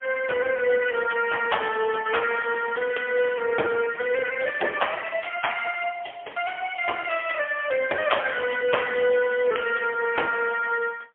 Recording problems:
phone line; 340 Hz to 3.3 kHz, AMR-NB, then MP3

